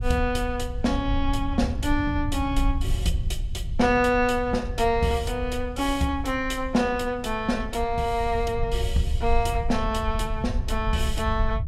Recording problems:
rumble; below 76 Hz, SNR 5 dB

